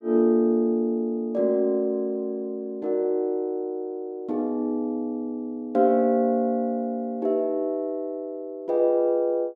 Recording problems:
none

